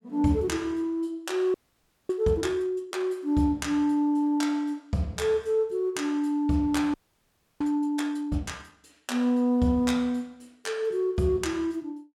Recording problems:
audio freezing; at 1.5 s for 0.5 s and at 7 s for 0.5 s

